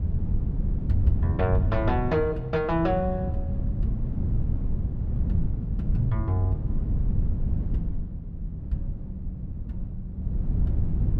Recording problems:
wind on the microphone; below 120 Hz, SNR 0 dB

